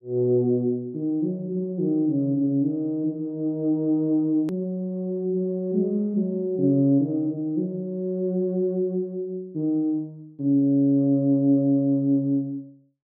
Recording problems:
click at an edit; at 4.5 s

